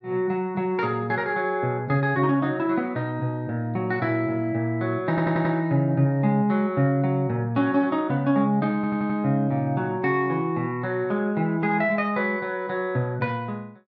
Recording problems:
stutter; at 5 s and at 9 s

